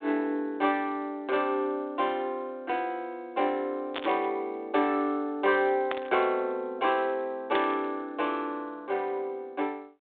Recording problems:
telephone audio; 260 Hz to 3.6 kHz, G.726
static burst; at 4 s, at 6 s and at 7.5 s; peak +1 dB vs average level

